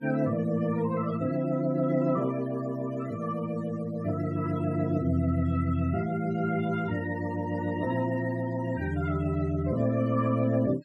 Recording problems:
noise reduction artefacts; signal-to-artefact ratio 23 dB

